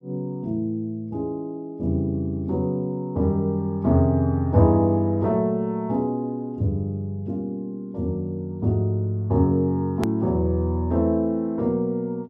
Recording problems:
edit click; at 10 s

